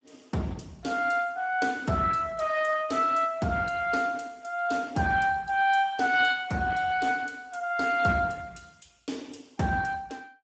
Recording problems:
codec artefacts; Speex, log-spectral distance 5 dB, nothing above 7.6 kHz

